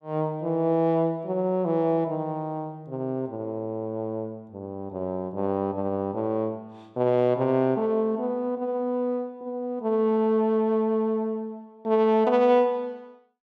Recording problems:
none

